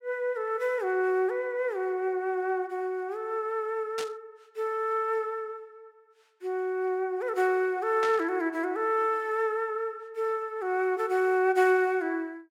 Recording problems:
static burst; at 4 s and at 8 s; peak -5 dB vs average level

